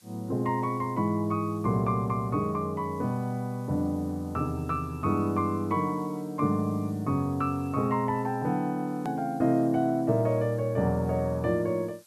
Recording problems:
hiss; slope +1 dB per octave, SNR 29 dB
click at an edit; at 9 s

